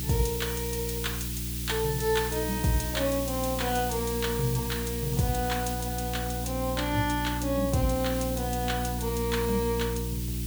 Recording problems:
hum; 60 Hz, harmonics up to 360 Hz, SNR 5 dB
background hiss; slope +4 dB per octave, SNR 6 dB

